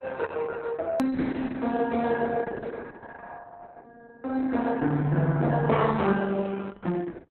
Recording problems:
lossy compression; Opus, log-spectral distance 4 dB, nothing above 13.1 kHz
edit click; at 1 s

